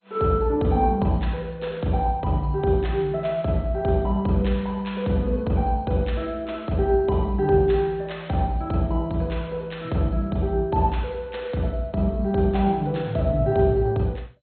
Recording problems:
lossy compression; MP2, log-spectral distance 2 dB, nothing above 4.2 kHz

